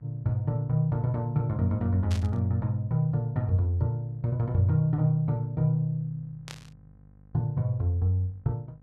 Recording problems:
hum; 50 Hz, harmonics up to 800 Hz, SNR 28 dB
static burst; at 2 s and at 6.5 s; peak -9 dB vs average level

